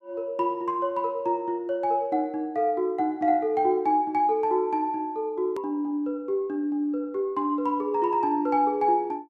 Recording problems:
hard cut with a click; at 5.5 s

